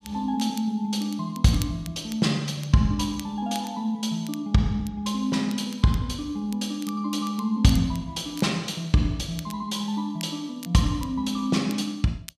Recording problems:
crackle; vinyl, SNR 20 dB

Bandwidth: 14.5 kHz